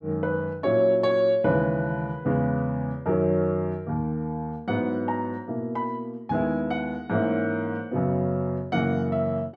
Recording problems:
none

